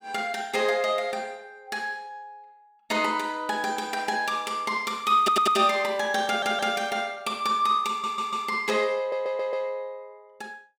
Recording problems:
audio stuttering; 4 times, first at 5 s

